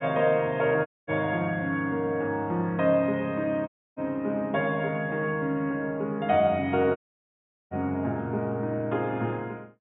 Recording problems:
low-pass filter; nothing above 4 kHz
audio cutting out; at 1 s, at 3.5 s and at 7 s for 0.5 s

